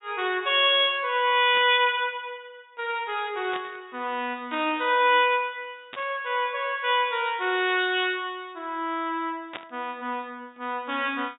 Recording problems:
treble missing; nothing above 4 kHz
burst of static; 4 times, first at 1.5 s; peak -6 dB vs average level

